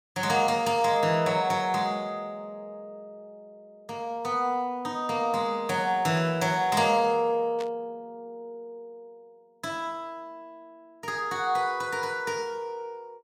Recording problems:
static burst; at 7.5 s; peak -11 dB vs average level

